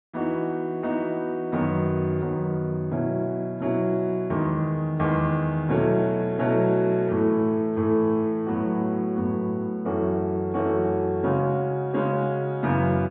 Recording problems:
treble cut off; nothing above 4 kHz

